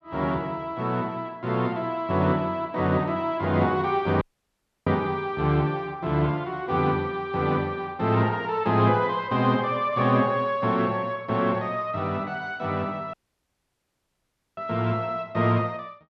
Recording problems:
dropout; at 4 s for 0.5 s and at 13 s for 1.5 s

